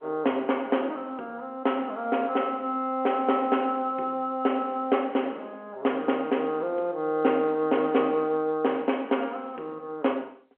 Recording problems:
phone line; 280 Hz to 3.2 kHz, G.711

